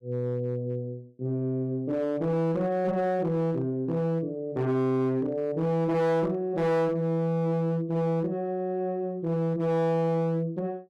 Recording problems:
distortion; hard clipping, signal-to-distortion ratio 11 dB

